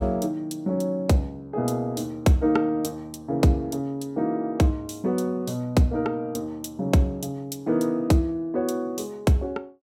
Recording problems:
none

